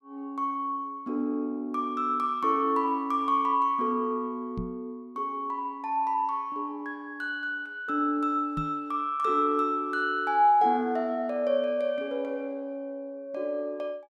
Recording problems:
knock on the microphone; at 4.5 s and at 8.5 s; peak -2 dB vs average level

